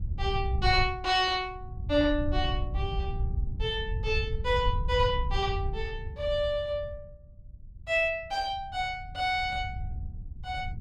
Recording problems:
wind on the microphone; below 90 Hz, SNR 5 dB

